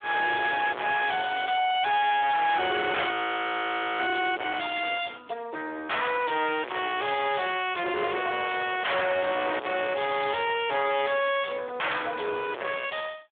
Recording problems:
telephone audio; 340 Hz to 3.5 kHz, Speex
distorted audio; hard clipping, uneven, signal-to-distortion ratio 0 dB
frozen audio; at 3 s for 1 s

